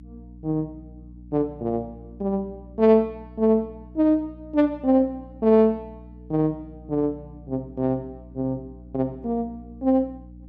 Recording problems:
hum; 60 Hz, harmonics up to 300 Hz, SNR 20 dB

